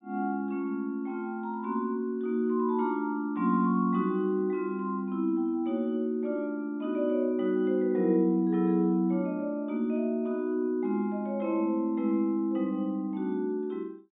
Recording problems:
low-pass filter; nothing above 4 kHz

